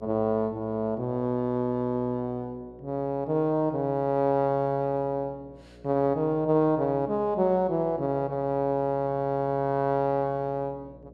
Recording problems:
hum; 60 Hz, harmonics up to 600 Hz, SNR 25 dB

